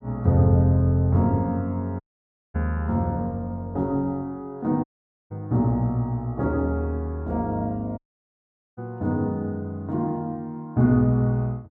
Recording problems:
audio cutting out; at 2 s for 0.5 s, at 5 s and at 8 s for 1 s

